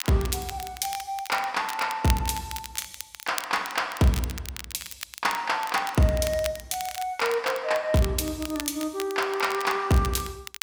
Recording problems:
crackle; vinyl, SNR 11 dB

